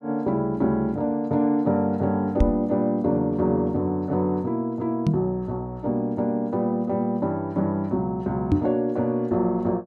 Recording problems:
knock on the microphone; at 2.5 s, at 5 s and at 8.5 s; peak +7 dB vs average level

